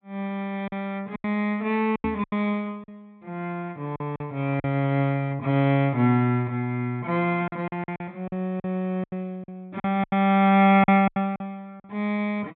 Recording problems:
treble cut off; nothing above 4 kHz
packet loss; 9% of the sound replaced, filled with silence
microphone bump; at 2 s; peak -6 dB vs average level

